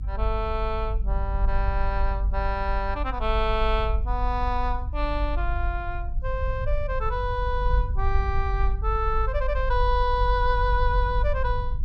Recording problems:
rumble; below 50 Hz, strongest tone 46 Hz, SNR 0 dB

